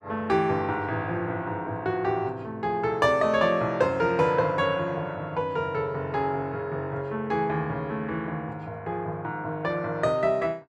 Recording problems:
none

